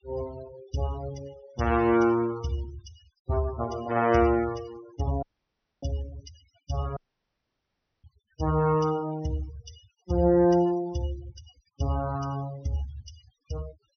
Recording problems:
treble missing; nothing above 6 kHz
denoising artefacts; signal-to-artefact ratio 19 dB
dropout; at 5 s for 0.5 s and at 7 s for 1 s

